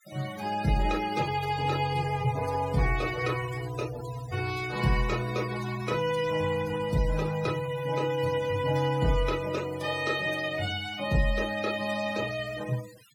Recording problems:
denoising artefacts; signal-to-artefact ratio 14 dB

